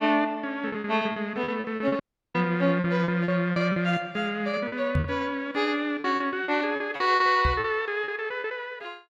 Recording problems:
packet loss; 11% of the sound replaced, filled with repeated pitch periods
audio cutting out; at 2 s
knock on the microphone; at 5 s and at 7.5 s; peak +4 dB vs average level

